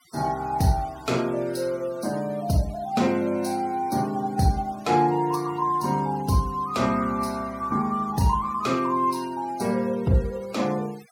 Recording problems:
noise reduction artefacts; signal-to-artefact ratio 22 dB

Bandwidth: 16.5 kHz